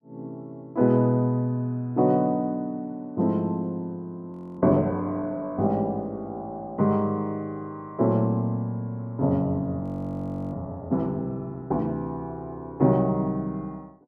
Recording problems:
frozen audio; at 4.5 s and at 10 s for 0.5 s

